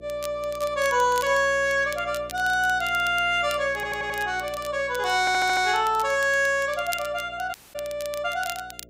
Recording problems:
hum; 60 Hz, harmonics up to 660 Hz, SNR 23 dB
crackling; vinyl, SNR 18 dB
audio stuttering; at 3.5 s and at 5 s
dropout; at 7.5 s

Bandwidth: 15.5 kHz